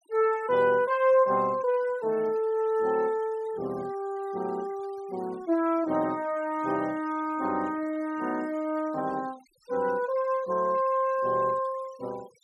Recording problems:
denoising artefacts; signal-to-artefact ratio 25 dB

